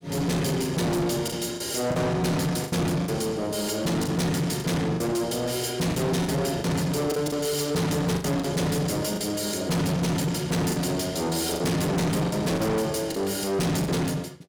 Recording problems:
distortion; soft clipping, signal-to-distortion ratio 7 dB
lost packets; 7% of the sound replaced, filled with the last packet

